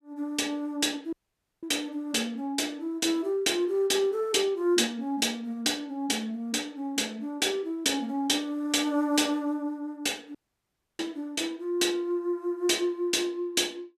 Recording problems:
dropout; at 1 s for 0.5 s and at 10 s for 0.5 s

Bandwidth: 14.5 kHz